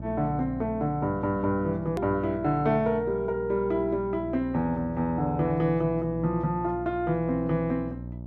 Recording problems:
hum; 60 Hz, harmonics up to 660 Hz, SNR 12 dB
edit click; at 2 s

